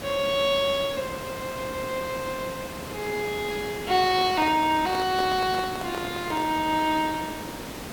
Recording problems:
hiss; slope -5 dB per octave, SNR 10 dB
microphone handling noise; from 4 to 6.5 s; peak -4 dB vs average level

